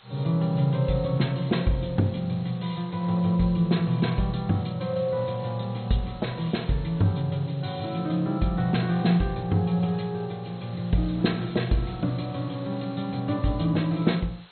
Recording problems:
codec artefacts; MP2, log-spectral distance 10 dB, nothing above 4.2 kHz
hiss; SNR 24 dB

